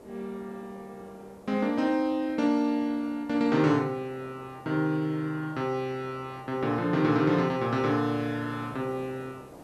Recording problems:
hiss; SNR 21 dB

